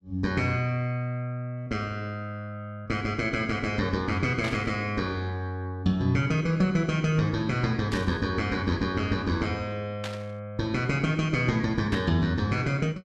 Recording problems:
burst of static; 4 times, first at 4.5 s; peak -4 dB vs average level

